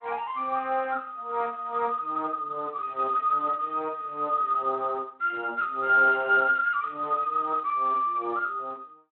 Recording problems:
telephone audio; 280 Hz to 3.5 kHz, Speex

